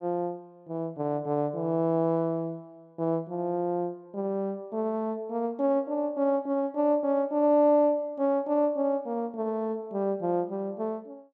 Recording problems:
none

